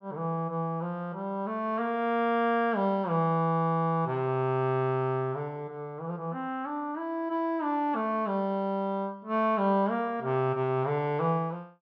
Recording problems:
none

